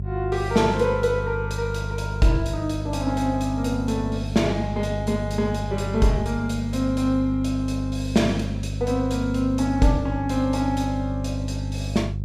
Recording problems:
hum; 50 Hz, harmonics up to 400 Hz, SNR 5 dB

